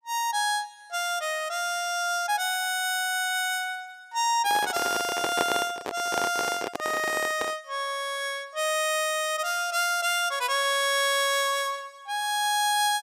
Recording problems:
handling noise; from 4.5 to 7.5 s; peak +3 dB vs average level

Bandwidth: 15.5 kHz